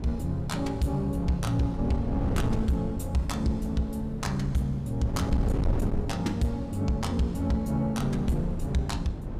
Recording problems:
distorted audio; soft clipping, signal-to-distortion ratio 11 dB
wind noise; below 190 Hz, SNR 6 dB

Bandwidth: 15.5 kHz